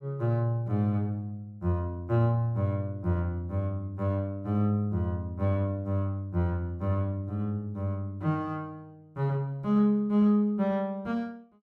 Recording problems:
none

